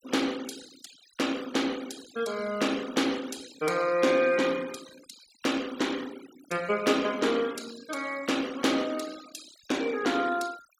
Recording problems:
noise reduction artefacts; signal-to-artefact ratio 16 dB

